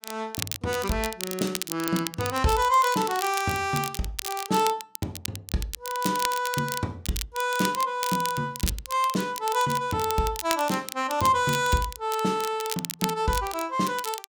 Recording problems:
crackling; vinyl, SNR 8 dB

